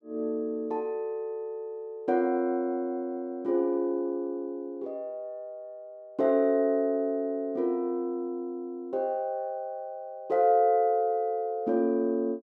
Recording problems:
none

